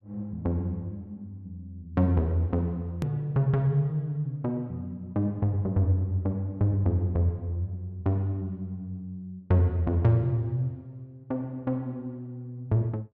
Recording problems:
click at an edit; at 3 s

